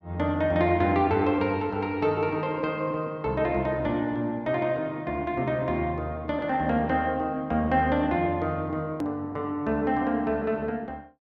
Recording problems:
hard cut with a click; at 9 s

